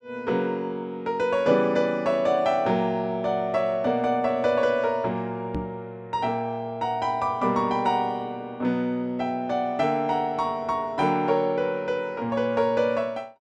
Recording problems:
microphone thump; at 5.5 s; peak -2 dB vs average level

